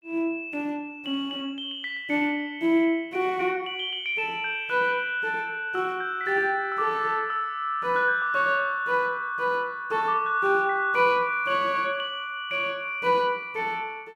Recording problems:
none

